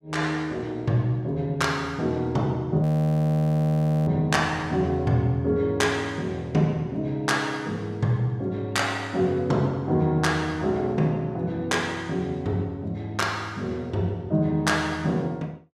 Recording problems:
frozen audio; at 3 s for 1 s

